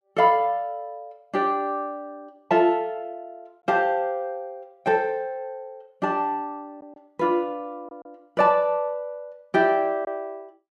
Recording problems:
lost packets; 1.1% of the sound replaced, filled with silence

